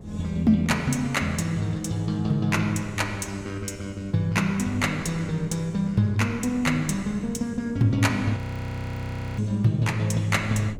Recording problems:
wind on the microphone; below 260 Hz, SNR 20 dB
audio freezing; at 8.5 s for 1 s

